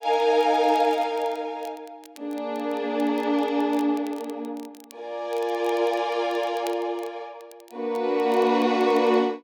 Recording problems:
crackling; vinyl, SNR 26 dB

